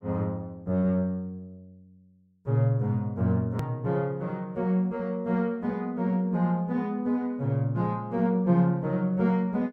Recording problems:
edit click; at 3.5 s

